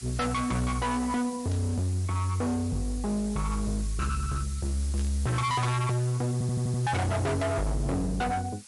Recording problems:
lossy compression; MP3, log-spectral distance 8 dB, nothing above 11 kHz
distortion; hard clipping, signal-to-distortion ratio 6 dB
background hiss; slope +3 dB per octave, SNR 15 dB
static burst; at 1.5 s and at 5 s; peak -13 dB vs average level
audio stuttering; at 6.5 s

